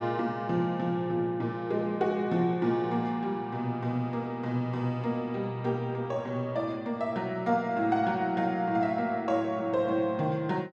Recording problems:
none

